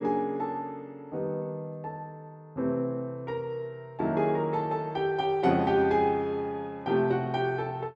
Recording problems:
none

